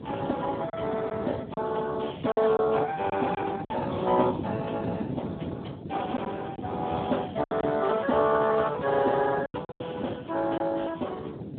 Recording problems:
telephone audio; 190 Hz to 3 kHz, Speex
wind on the microphone; below 350 Hz, SNR 10 dB
packet loss; 5% of the sound replaced, filled with silence

